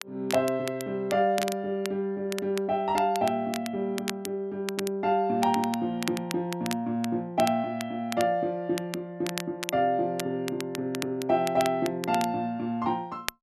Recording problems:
crackle; vinyl, SNR 11 dB

